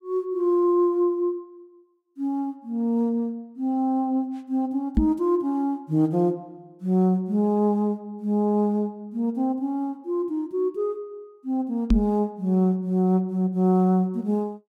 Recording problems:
knock on the microphone; at 5 s and at 12 s; peak +7 dB vs average level

